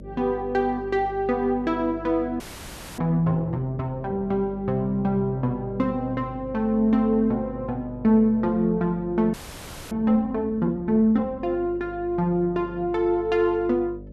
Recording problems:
hum; 50 Hz, harmonics up to 600 Hz, SNR 17 dB
frozen audio; at 2.5 s for 0.5 s and at 9.5 s for 0.5 s

